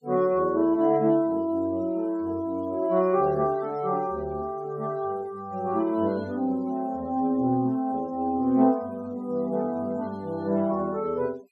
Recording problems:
denoising artefacts; signal-to-artefact ratio 27 dB

